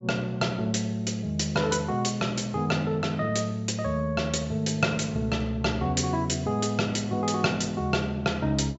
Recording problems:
treble cut off; nothing above 8 kHz

